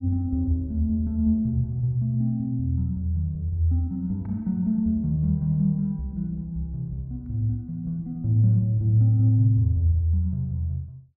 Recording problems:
none

